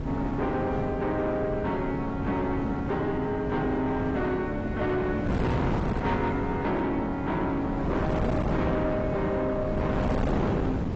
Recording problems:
lossy codec; AAC, log-spectral distance 2 dB, nothing above 7.6 kHz
distorted audio; soft clipping, signal-to-distortion ratio 7 dB
wind noise; below 440 Hz, SNR 2 dB

